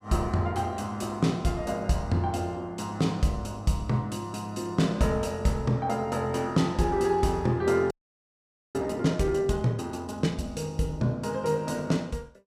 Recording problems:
audio freezing; at 8 s for 1 s

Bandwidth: 14.5 kHz